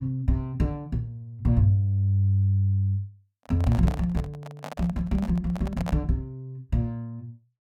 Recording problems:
handling noise; from 3.5 to 6 s; peak -4 dB vs average level

